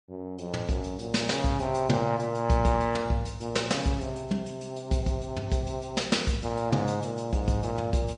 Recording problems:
codec artefacts; MP3, log-spectral distance 2 dB, nothing above 9.5 kHz

